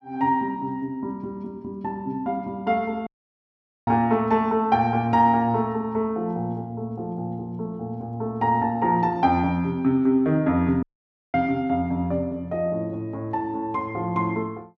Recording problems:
dropout; at 3 s for 1 s and at 11 s for 0.5 s

